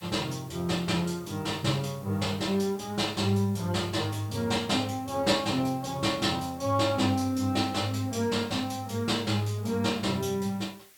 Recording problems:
background hiss; SNR 24 dB

